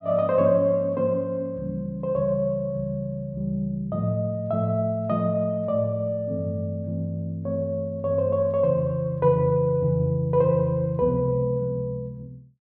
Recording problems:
none

